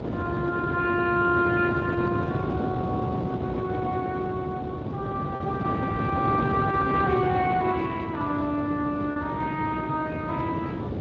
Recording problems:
codec artefacts; Speex, log-spectral distance 3 dB
wind on the microphone; below 450 Hz, SNR 2 dB
packet loss; 0.7% of the sound replaced, filled with repeated pitch periods

